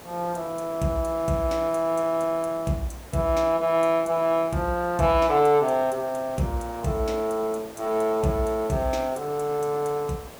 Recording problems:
background hiss; slope -5 dB per octave, SNR 19 dB

